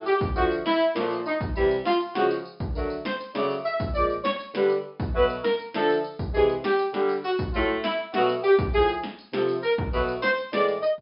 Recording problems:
treble missing; nothing above 5.5 kHz

